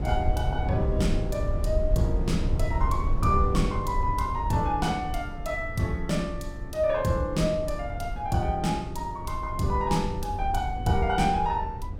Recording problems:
rumble; below 92 Hz, SNR 4 dB

